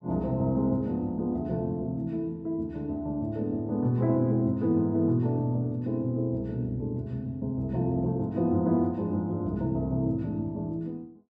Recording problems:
none

